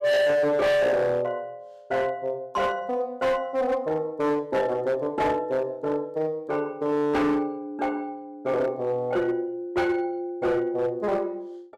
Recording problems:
distorted audio; hard clipping, signal-to-distortion ratio 7 dB

